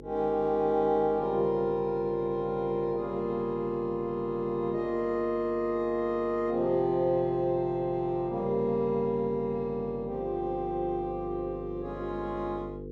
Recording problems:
electrical hum; 50 Hz, harmonics up to 500 Hz, SNR 14 dB

